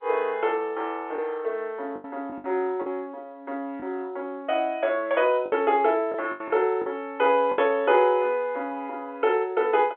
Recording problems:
telephone audio; 300 Hz to 3.5 kHz, G.711
lost packets; 5% of the sound replaced, filled with the last packet

